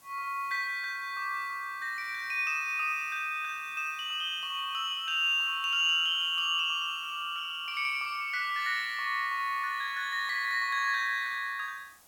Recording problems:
hiss; SNR 27 dB

